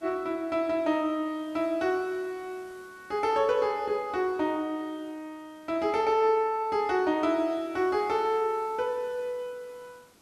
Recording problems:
hiss; slope -3 dB per octave, SNR 29 dB

